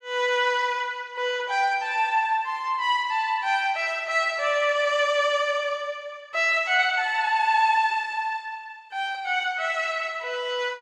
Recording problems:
none

